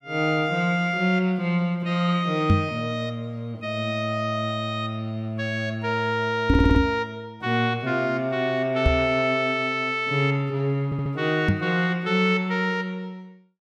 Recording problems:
microphone thump; 4 times, first at 2.5 s; peak +8 dB vs average level
audio stuttering; at 6.5 s and at 11 s

